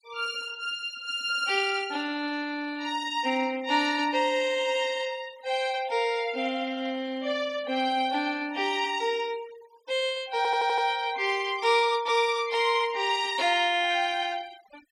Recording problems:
denoising artefacts; signal-to-artefact ratio 23 dB
audio stuttering; at 10 s

